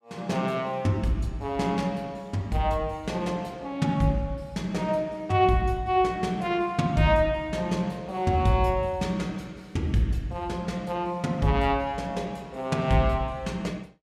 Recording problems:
none

